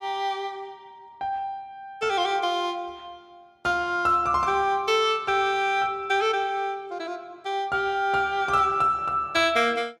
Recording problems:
none

